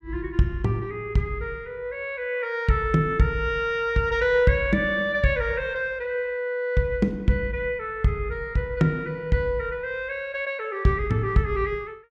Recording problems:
none

